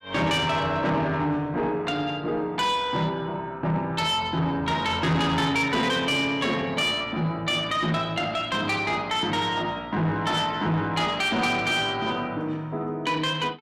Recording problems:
distorted audio; soft clipping, signal-to-distortion ratio 11 dB

